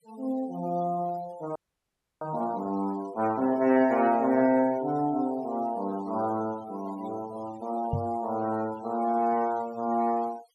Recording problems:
denoising artefacts; signal-to-artefact ratio 21 dB
audio freezing; at 1.5 s for 0.5 s
microphone bump; at 8 s; peak +2 dB vs average level

